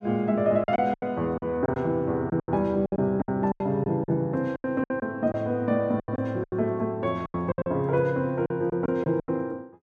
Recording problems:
lost packets; 14% of the sound replaced, filled with silence

